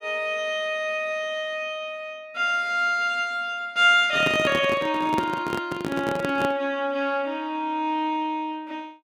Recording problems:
handling noise; from 4 to 6.5 s; peak +1 dB vs average level

